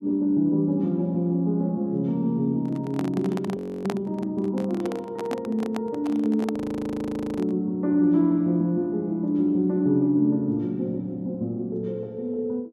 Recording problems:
handling noise; from 2.5 to 7.5 s; peak -3 dB vs average level
audio freezing; at 3.5 s and at 6.5 s for 1 s

